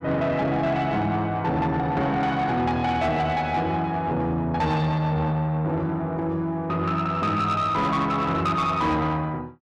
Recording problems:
distortion; soft clipping, signal-to-distortion ratio 11 dB

